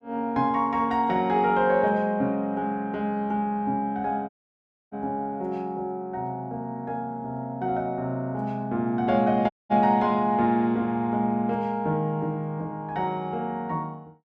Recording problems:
dropout; at 4.5 s for 0.5 s and at 9.5 s

